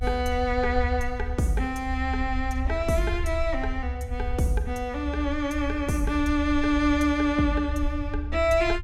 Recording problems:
low-frequency rumble; below 70 Hz, SNR 6 dB

